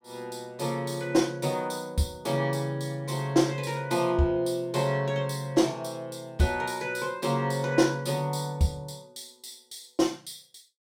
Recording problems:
none

